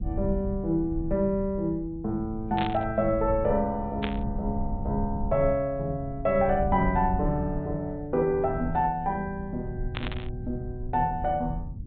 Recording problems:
low-pass filter; nothing above 4 kHz
low-frequency rumble; below 100 Hz, SNR 9 dB
burst of static; at 2.5 s, at 4 s and at 10 s; peak -1 dB vs average level

